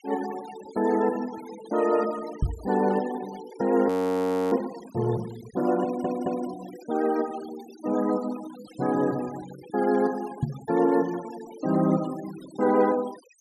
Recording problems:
denoising artefacts; signal-to-artefact ratio 19 dB
microphone bump; at 2.5 s and at 10 s; peak +4 dB vs average level
audio freezing; at 4 s for 0.5 s
audio stuttering; at 6 s

